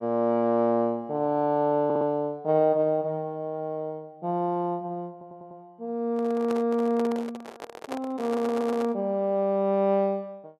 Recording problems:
stutter; at 2 s, at 5 s and at 8.5 s
microphone handling noise; from 6 to 9 s; peak -5 dB vs average level

